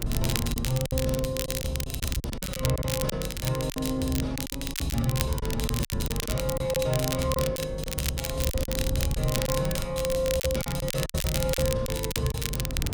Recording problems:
hum; 50 Hz, harmonics up to 550 Hz, SNR 8 dB
wind noise; below 110 Hz, SNR 9 dB
crackling; vinyl, SNR 3 dB
lost packets; 11% of the sound replaced, filled with silence

